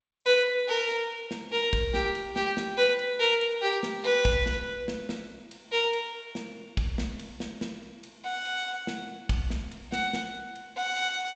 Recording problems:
lossy compression; G.722, log-spectral distance 3 dB

